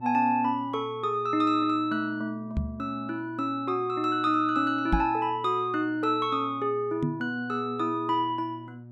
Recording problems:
hum; 60 Hz, harmonics up to 720 Hz, SNR 19 dB
microphone thump; at 2.5 s, at 5 s and at 7 s; peak +4 dB vs average level

